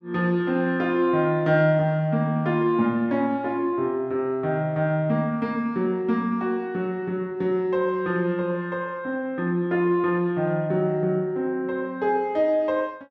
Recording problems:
none

